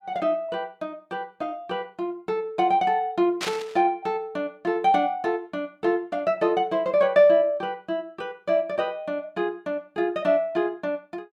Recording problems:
burst of static; at 3.5 s; peak 0 dB vs average level

